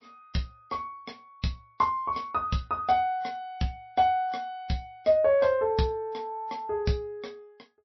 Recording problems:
lossy codec; MP3, log-spectral distance 2 dB, nothing above 5.7 kHz

